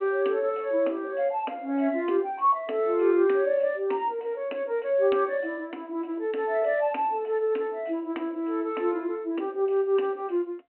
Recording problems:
phone line; 240 Hz to 3.1 kHz, G.726

